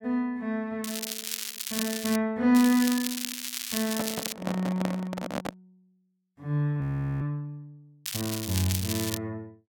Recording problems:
crackling; from 1 to 2 s, from 2.5 to 4.5 s and from 8 to 9 s; loose cable, SNR 4 dB
microphone handling noise; from 4 to 5.5 s; peak +1 dB vs average level
frozen audio; at 7 s

